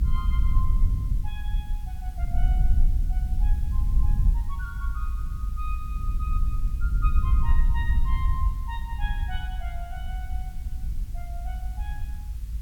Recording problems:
hiss; slope +1 dB per octave, SNR 14 dB
rumble; below 60 Hz, SNR -13 dB

